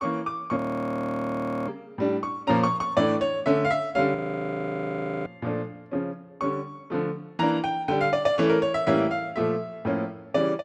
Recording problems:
audio freezing; at 0.5 s for 1 s and at 4 s for 1 s

